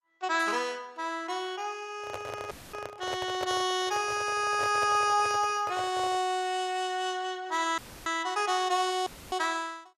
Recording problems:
lossy compression; Opus, log-spectral distance 2 dB
handling noise; from 2 to 6.5 s; peak -3 dB vs average level
audio cutting out; at 2.5 s, at 8 s and at 9 s; filled with static

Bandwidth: 14.5 kHz